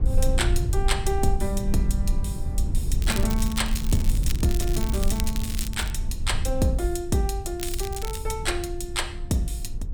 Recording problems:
rumble; below 68 Hz, SNR 1 dB
crackling; from 3 to 6 s and at 7.5 s; loose cable, SNR 8 dB

